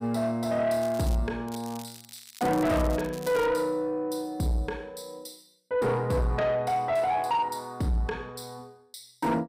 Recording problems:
distorted audio; soft clipping, signal-to-distortion ratio 10 dB
crackling; at 1 s and from 1.5 to 3.5 s; loose cable, SNR 18 dB

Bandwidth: 15.5 kHz